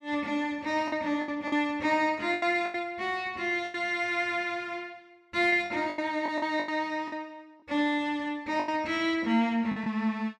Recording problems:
packet loss; 9% of the sound replaced, filled with the last packet

